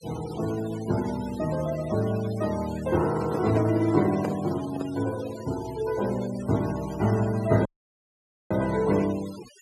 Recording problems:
noise reduction artefacts; signal-to-artefact ratio 16 dB
handling noise; from 3 to 5 s; peak 0 dB vs average level
audio cutting out; at 7.5 s for 1 s

